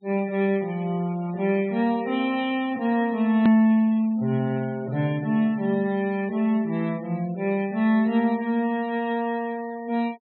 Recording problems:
low-pass filter; nothing above 4.3 kHz
noise reduction artefacts; signal-to-artefact ratio 24 dB
hard cut with a click; at 3.5 s

